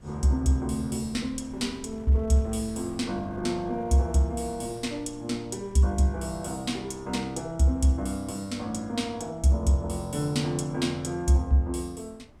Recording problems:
wind on the microphone; below 240 Hz, SNR 24 dB

